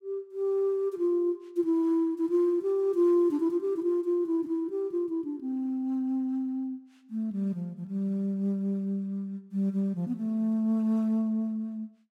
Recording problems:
none

